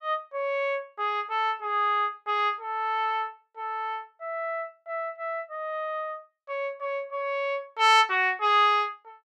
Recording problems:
none

